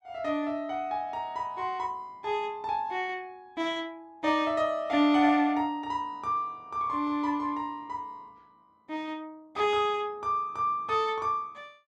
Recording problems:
none

